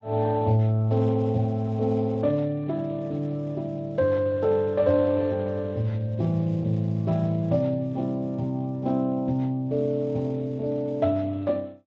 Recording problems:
codec artefacts; Speex, log-spectral distance 2 dB

